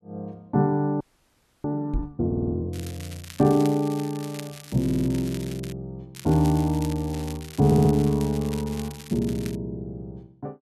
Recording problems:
frozen audio; at 1 s for 0.5 s
knock on the microphone; at 2 s; peak -1 dB vs average level
audio stuttering; at 2.5 s, at 5 s and at 7.5 s
crackling; from 2.5 to 5.5 s and from 6 to 9.5 s; loose cable, SNR 17 dB

